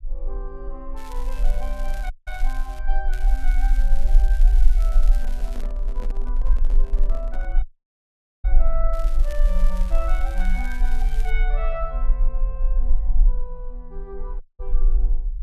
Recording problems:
low-frequency rumble; below 38 Hz, strongest tone 18 Hz, SNR -12 dB
crackle; from 1 to 3 s, from 3 to 5.5 s and from 9 to 11 s; loose cable, SNR 11 dB
audio cutting out; at 2 s, at 7.5 s for 1 s and at 14 s
handling noise; from 5 to 7.5 s; peak 0 dB vs average level

